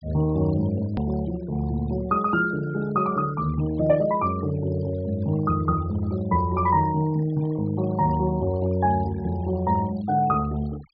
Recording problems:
treble cut off; nothing above 5.5 kHz
denoising artefacts; signal-to-artefact ratio 20 dB
hard cut with a click; at 1 s

